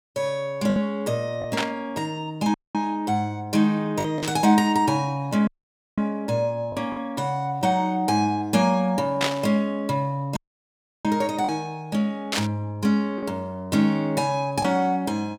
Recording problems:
packet loss; 2% of the sound replaced, filled with the last packet
burst of static; 4 times, first at 1.5 s; peak +4 dB vs average level
dropout; at 2.5 s, at 5.5 s for 0.5 s and at 10 s for 0.5 s

